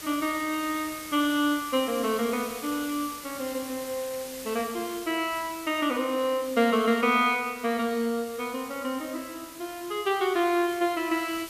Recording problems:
hiss; slope 0 dB per octave, SNR 14 dB

